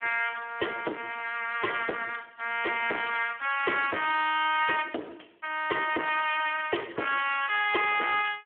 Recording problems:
phone line; 320 Hz to 3.1 kHz, Speex
distortion; soft clipping, signal-to-distortion ratio 12 dB

